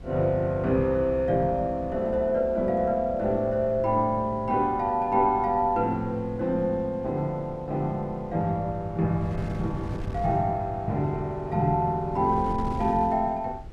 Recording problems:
wind noise; below 190 Hz, SNR 15 dB

